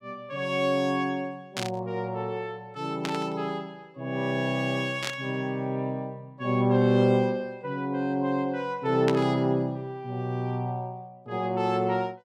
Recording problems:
static burst; 4 times, first at 1.5 s; peak 0 dB vs average level

